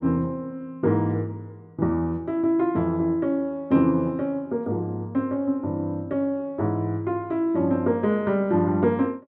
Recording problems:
none

